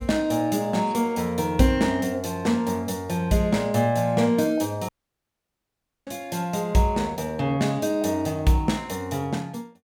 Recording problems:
audio cutting out; at 5 s for 1 s

